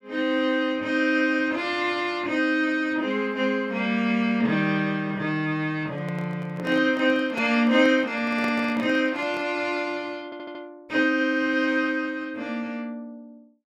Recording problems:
handling noise; from 6 to 9.5 s; peak -7 dB vs average level
audio stuttering; at 10 s

